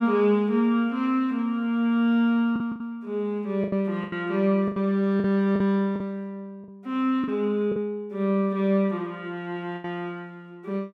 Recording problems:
packet loss; 6% of the sound replaced, filled with the last packet

